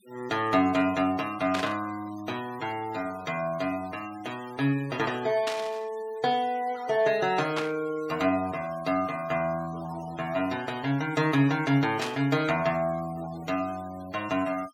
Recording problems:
denoising artefacts; signal-to-artefact ratio 20 dB
burst of static; 4 times, first at 1.5 s; peak 0 dB vs average level

